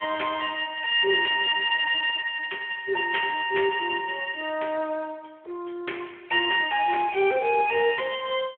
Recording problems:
phone line; 370 Hz to 3.3 kHz, Speex

